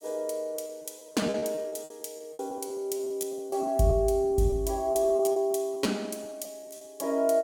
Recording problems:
packet loss; 14% of the sound replaced, filled with repeated pitch periods

